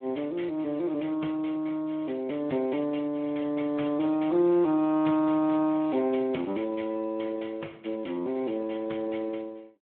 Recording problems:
phone line; 220 Hz to 3.2 kHz, Speex

